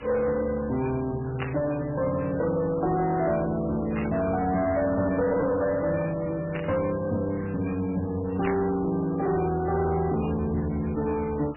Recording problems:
lossy codec; MP3, log-spectral distance 12 dB, nothing above 2.5 kHz
distorted audio; soft clipping, signal-to-distortion ratio 11 dB
hiss; SNR 18 dB
static burst; 4 times, first at 1.5 s; peak -2 dB vs average level

